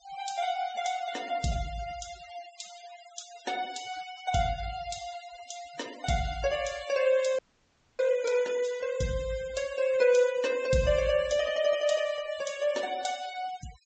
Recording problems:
low-pass filter; nothing above 8 kHz
noise reduction artefacts; signal-to-artefact ratio 18 dB
frozen audio; at 7.5 s for 0.5 s

